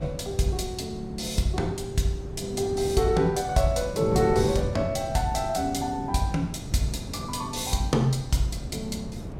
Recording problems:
wind noise; below 260 Hz, SNR 9 dB

